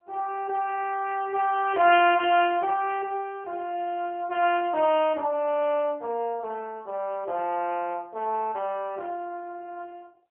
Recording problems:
telephone audio; 280 Hz to 3.4 kHz, AMR-NB

